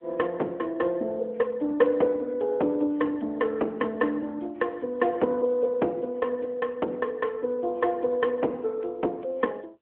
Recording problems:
phone line; 240 Hz to 3.4 kHz, AMR-NB

